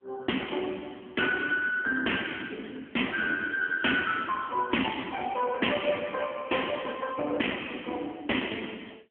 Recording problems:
telephone audio; 240 Hz to 3.3 kHz, AMR-NB

